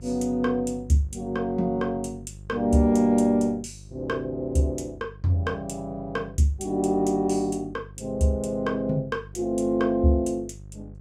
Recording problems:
hum; 50 Hz, harmonics up to 550 Hz, SNR 19 dB

